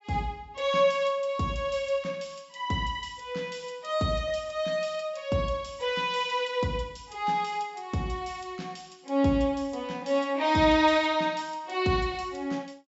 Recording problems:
low-pass filter; nothing above 8 kHz

